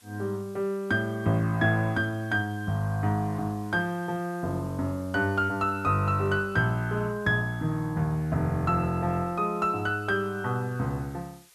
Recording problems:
hiss; slope +2 dB per octave, SNR 27 dB

